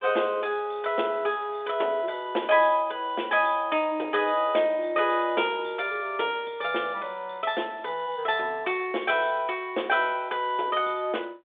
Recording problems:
telephone audio; 280 Hz to 3.6 kHz, G.726

